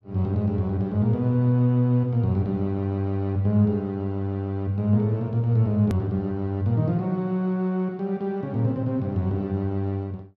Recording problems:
click at an edit; at 6 s

